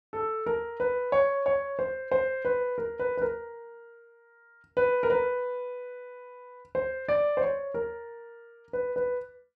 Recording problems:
none

